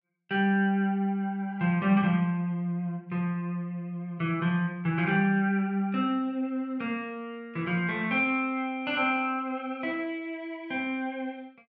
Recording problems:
none

